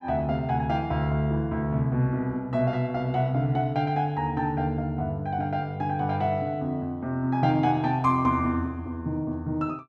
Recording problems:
none

